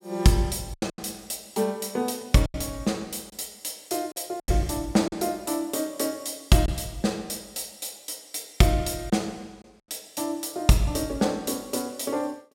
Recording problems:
lost packets; 4% of the sound replaced, filled with silence

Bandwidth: 16.5 kHz